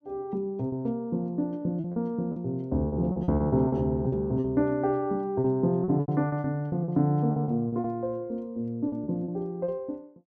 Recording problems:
packet loss; 11% of the sound replaced, filled with repeated pitch periods

